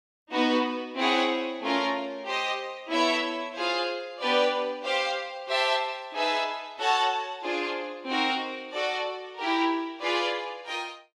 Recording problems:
none

